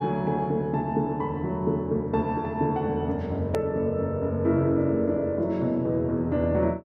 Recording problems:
edit click; at 3.5 s

